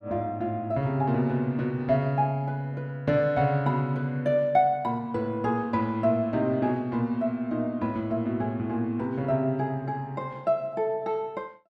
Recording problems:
none

